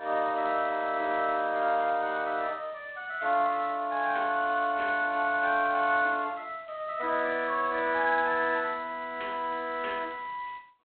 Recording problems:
telephone audio; 260 Hz to 3.9 kHz, G.726

